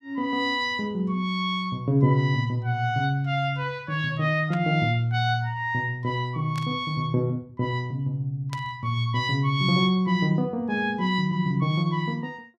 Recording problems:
static burst; at 4.5 s, at 6.5 s and at 8.5 s; peak -9 dB vs average level

